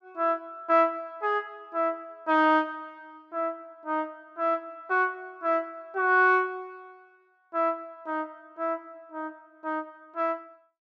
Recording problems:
none

